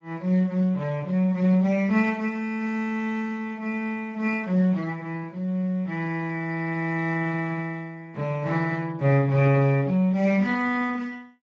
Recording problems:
lossy compression; Speex, log-spectral distance 2 dB, nothing above 16 kHz

